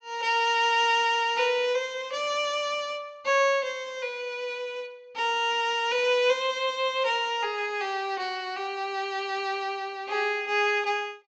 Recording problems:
treble missing; nothing above 8 kHz

